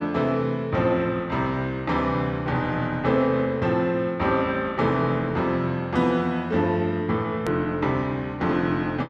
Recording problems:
hard cut with a click; at 7.5 s

